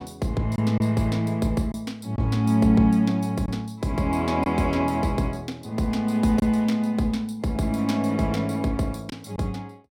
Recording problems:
lost packets; 1.8% of the sound replaced, filled with silence

